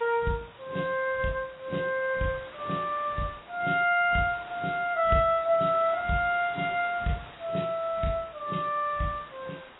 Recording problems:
lossy codec; AAC, then AAC, log-spectral distance 9 dB, nothing above 3.8 kHz
background hiss; SNR 20 dB

